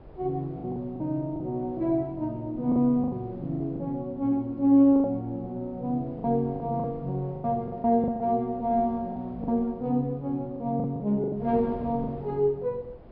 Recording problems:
treble cut off; nothing above 5.5 kHz
wind on the microphone; below 480 Hz, SNR 21 dB
packet loss; 9% of the sound replaced, filled with the last packet

